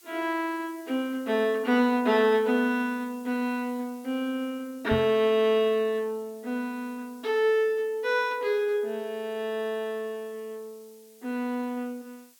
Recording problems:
hiss; slope +3 dB per octave, SNR 27 dB
microphone bump; at 5 s; peak -1 dB vs average level

